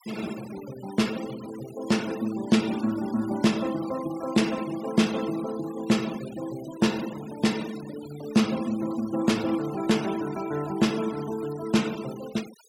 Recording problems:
noise reduction artefacts; signal-to-artefact ratio 16 dB

